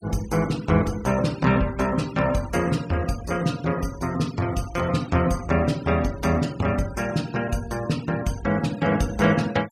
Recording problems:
denoising artefacts; signal-to-artefact ratio 20 dB

